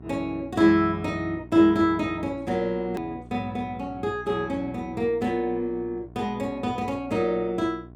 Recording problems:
hum; 60 Hz, harmonics up to 1.1 kHz, SNR 20 dB
hard cut with a click; at 3 s

